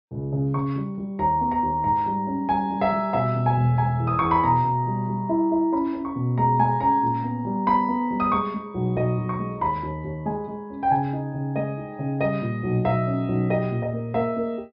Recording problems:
treble cut off; nothing above 5.5 kHz

